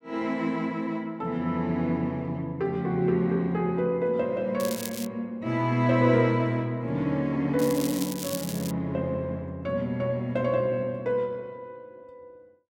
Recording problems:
crackle; at 4.5 s and from 7.5 to 8.5 s; loose cable, SNR 10 dB

